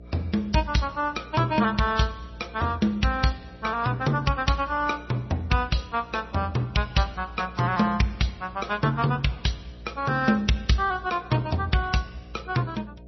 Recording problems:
codec artefacts; Vorbis, then MP3, log-spectral distance 3 dB, nothing above 5.8 kHz
electrical hum; 60 Hz, harmonics up to 720 Hz, SNR 20 dB

